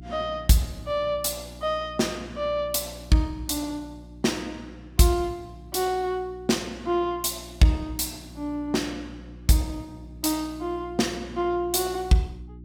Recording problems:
hum; 60 Hz, harmonics up to 360 Hz, SNR 18 dB

